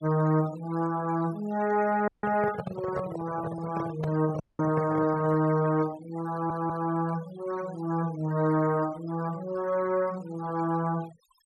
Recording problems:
noise reduction artefacts; signal-to-artefact ratio 18 dB
microphone handling noise; from 2 to 5.5 s; peak -2 dB vs average level
audio cutting out; at 2 s and at 4.5 s
audio stuttering; at 6.5 s

